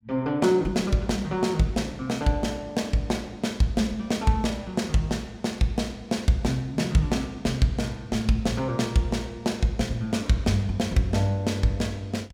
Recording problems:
none

